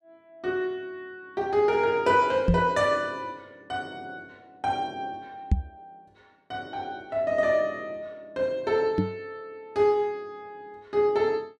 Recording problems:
knock on the microphone; at 2.5 s, at 5.5 s and at 9 s; peak +8 dB vs average level

